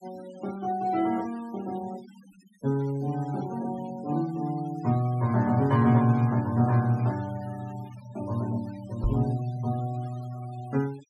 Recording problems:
denoising artefacts; signal-to-artefact ratio 22 dB
microphone thump; at 9 s; peak +3 dB vs average level

